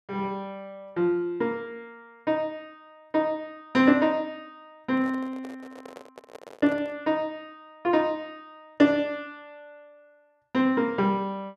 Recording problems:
microphone handling noise; from 5 to 7 s; peak -12 dB vs average level

